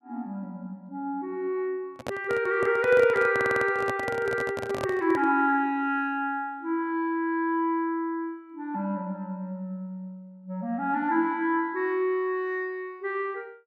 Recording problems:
microphone handling noise; from 2 to 5.5 s; peak -1 dB vs average level
stutter; at 3.5 s

